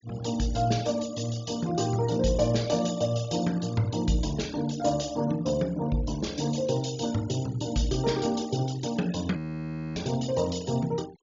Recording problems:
treble cut off; nothing above 7.3 kHz
denoising artefacts; signal-to-artefact ratio 18 dB
audio freezing; at 9.5 s for 0.5 s

